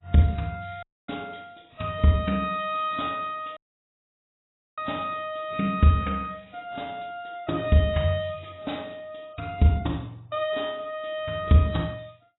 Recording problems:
lossy codec; AAC, log-spectral distance 6 dB, nothing above 3.8 kHz
audio cutting out; at 1 s and at 3.5 s for 1 s

